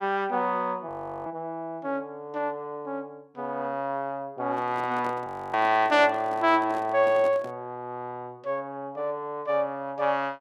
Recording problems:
audio freezing; at 1 s and at 5.5 s
handling noise; from 4.5 to 7.5 s; peak -8 dB vs average level

